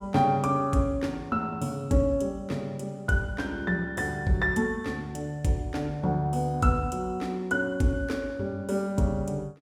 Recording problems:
none

